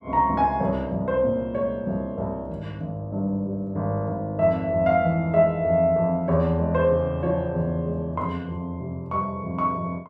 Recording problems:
none

